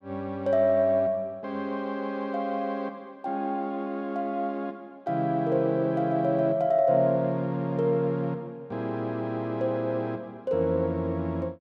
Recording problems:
none

